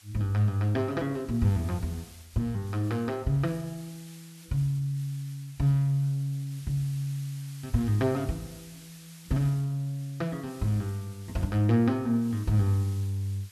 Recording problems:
background hiss; slope +3 dB per octave, SNR 22 dB

